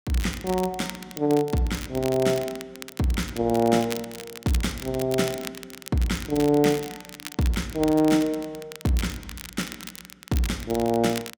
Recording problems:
crackle; vinyl, SNR 14 dB

